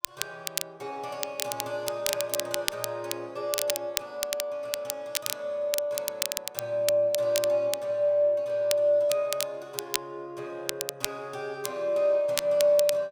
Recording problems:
crackling; vinyl, SNR 4 dB

